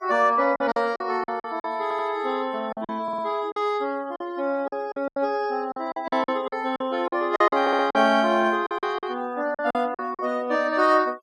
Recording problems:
denoising artefacts; signal-to-artefact ratio 25 dB
lost packets; 12% of the sound replaced, filled with silence
stutter; at 2 s, at 3 s and at 7.5 s

